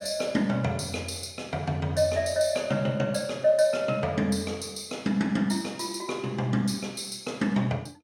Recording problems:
none

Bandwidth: 17 kHz